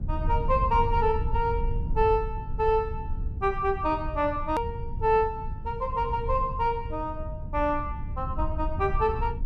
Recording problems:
rumble; below 86 Hz, SNR 6 dB
hard cut with a click; at 4.5 s

